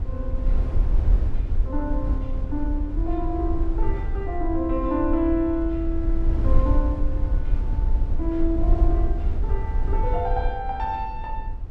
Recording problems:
rumble; below 60 Hz, SNR -2 dB

